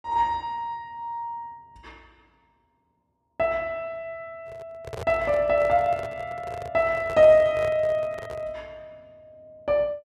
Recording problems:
microphone handling noise; from 4.5 to 8.5 s; peak -7 dB vs average level

